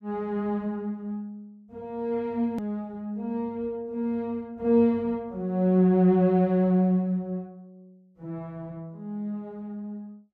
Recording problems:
hard cut with a click; at 2.5 s

